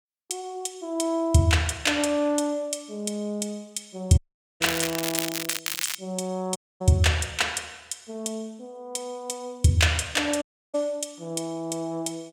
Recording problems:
dropout; at 4 s, at 6.5 s and at 10 s
crackling; from 4.5 to 6 s; loose cable, SNR 2 dB

